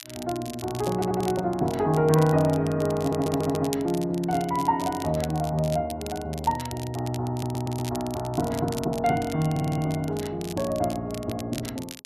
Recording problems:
crackle; vinyl, SNR 15 dB
audio stuttering; 4 times, first at 1 s

